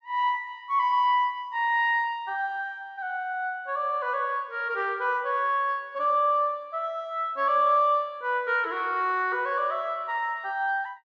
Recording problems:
none

